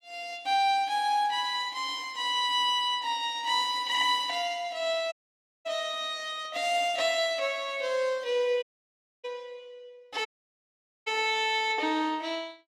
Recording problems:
dropout; at 5 s for 0.5 s, at 8.5 s for 0.5 s and at 10 s for 1 s

